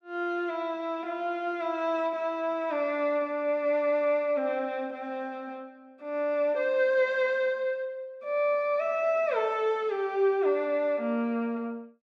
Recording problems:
none

